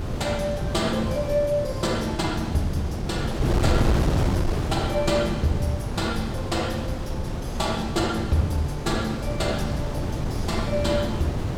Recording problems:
wind on the microphone; below 300 Hz, SNR 1 dB

